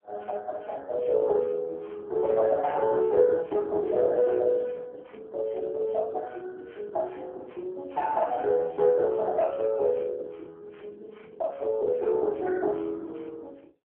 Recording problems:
phone line; 280 Hz to 3.1 kHz, AMR-NB

